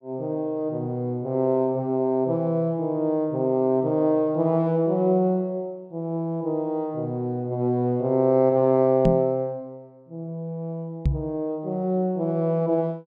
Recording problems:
microphone bump; at 9 s and at 11 s; peak +5 dB vs average level

